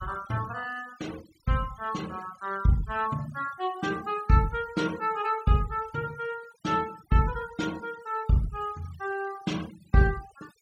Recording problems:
noise reduction artefacts; signal-to-artefact ratio 19 dB

